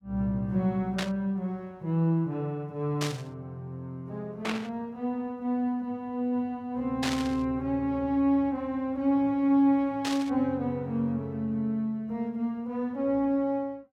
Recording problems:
static burst; 5 times, first at 1 s; peak +1 dB vs average level

